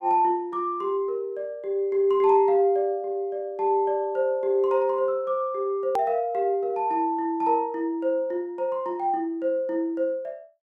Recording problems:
edit click; at 6 s

